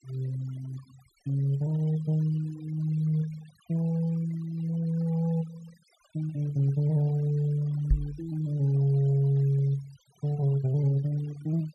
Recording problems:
denoising artefacts; signal-to-artefact ratio 26 dB
microphone thump; at 8 s; peak +6 dB vs average level

